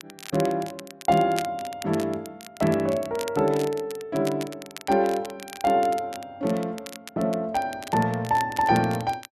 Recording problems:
crackle; vinyl, SNR 16 dB

